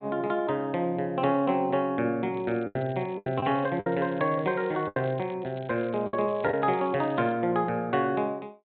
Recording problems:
treble missing; nothing above 4 kHz
packet loss; 5% of the sound replaced, filled with the last packet
crackle; from 2.5 to 5.5 s and from 5.5 to 7.5 s; loose cable, SNR 27 dB

